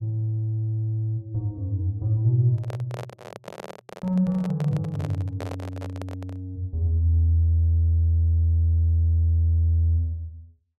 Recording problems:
handling noise; from 2.5 to 6.5 s; peak -8 dB vs average level

